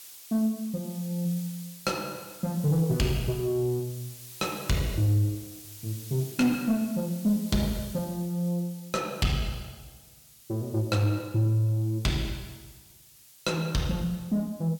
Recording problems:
distorted audio; soft clipping, signal-to-distortion ratio 11 dB
hiss; slope +3 dB per octave, SNR 17 dB

